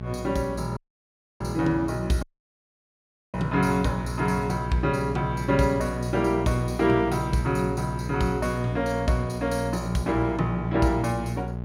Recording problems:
hum; 60 Hz, harmonics up to 1 kHz, SNR 7 dB
dropout; at 1 s for 0.5 s and at 2 s for 1 s

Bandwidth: 16.5 kHz